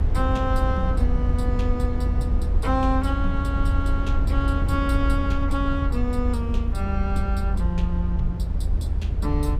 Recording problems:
low-frequency rumble; below 80 Hz, SNR -3 dB
wind noise; below 72 Hz, SNR 7 dB

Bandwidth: 15 kHz